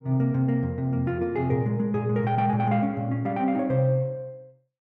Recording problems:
none

